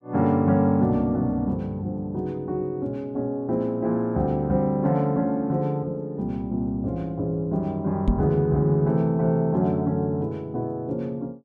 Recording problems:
microphone thump; at 8 s; peak +5 dB vs average level

